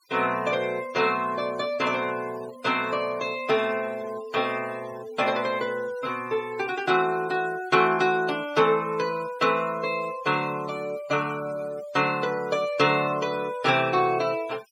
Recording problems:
noise reduction artefacts; signal-to-artefact ratio 20 dB

